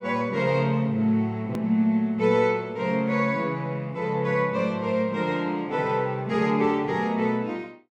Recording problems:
click at an edit; at 1.5 s

